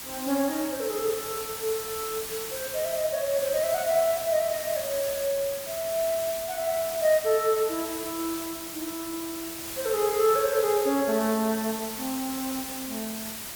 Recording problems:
background hiss; slope 0 dB per octave, SNR 6 dB

